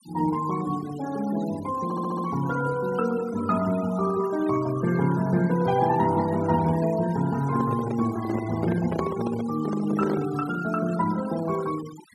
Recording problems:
denoising artefacts; signal-to-artefact ratio 17 dB
audio stuttering; at 2 s
microphone handling noise; from 7.5 to 10 s; peak +1 dB vs average level

